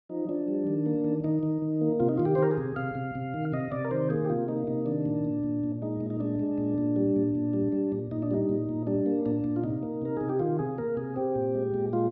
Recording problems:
none

